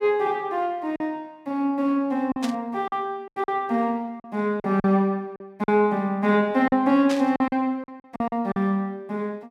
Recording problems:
packet loss; 8% of the sound replaced, filled with silence
burst of static; at 2.5 s and at 7 s; peak -5 dB vs average level

